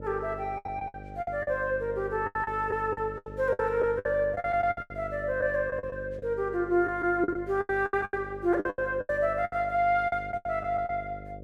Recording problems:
hum; 50 Hz, harmonics up to 600 Hz, SNR 15 dB
packet loss; 15% of the sound replaced, filled with the last packet

